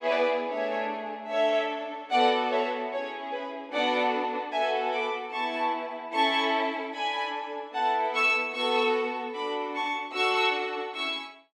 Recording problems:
none

